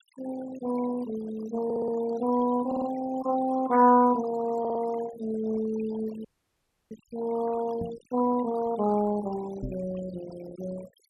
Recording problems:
denoising artefacts; signal-to-artefact ratio 16 dB
stutter; at 1.5 s, at 2.5 s and at 4.5 s
frozen audio; at 6.5 s for 0.5 s
microphone thump; at 8 s and at 9.5 s; peak -4 dB vs average level

